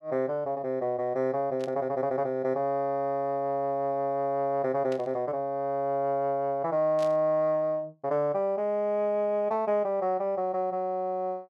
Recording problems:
burst of static; at 1.5 s, at 5 s and at 7 s; peak -12 dB vs average level

